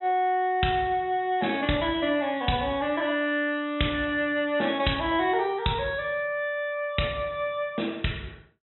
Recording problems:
treble cut off; nothing above 3.9 kHz

